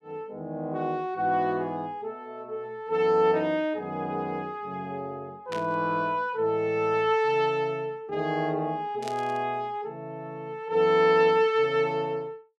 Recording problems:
static burst; at 5.5 s and at 9 s; peak -8 dB vs average level

